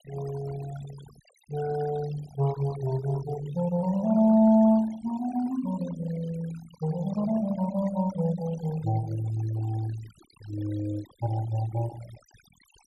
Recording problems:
denoising artefacts; signal-to-artefact ratio 18 dB

